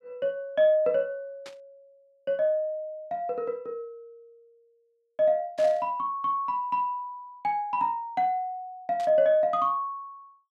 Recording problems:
burst of static; at 1.5 s, at 5.5 s and at 9 s; peak -13 dB vs average level

